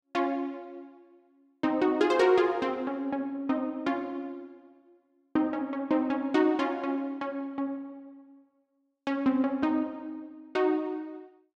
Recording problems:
none

